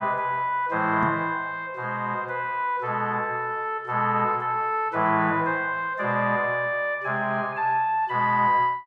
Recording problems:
microphone bump; at 1 s; peak -2 dB vs average level

